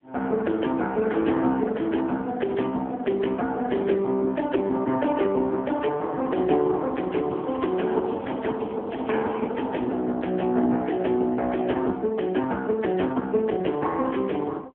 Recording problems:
telephone audio; 190 Hz to 3.3 kHz, AMR-NB
crackle; from 7.5 to 9.5 s; loose cable, SNR 28 dB

